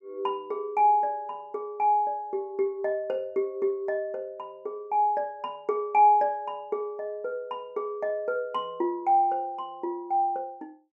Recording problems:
none

